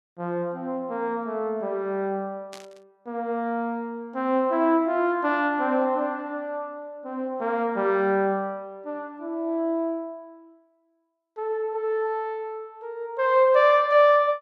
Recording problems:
static burst; at 2.5 s; peak -13 dB vs average level

